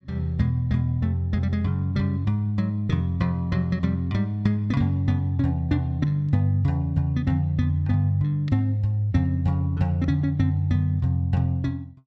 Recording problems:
none

